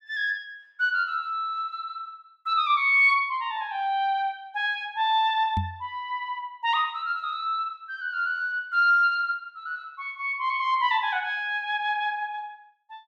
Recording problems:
microphone bump; at 5.5 s; peak 0 dB vs average level

